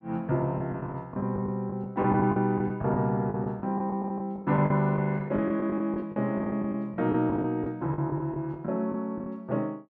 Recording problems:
packet loss; 14% of the sound replaced, filled with the last packet

